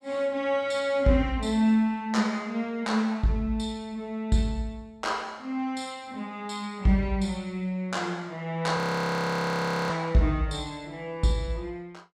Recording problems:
frozen audio; at 9 s for 1 s

